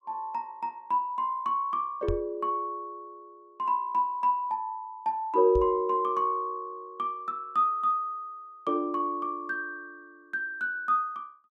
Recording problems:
knock on the microphone; at 2 s and at 5.5 s; peak 0 dB vs average level

